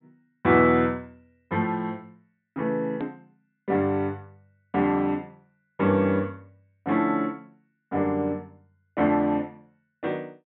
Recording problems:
treble missing; nothing above 4 kHz
hard cut with a click; at 3 s

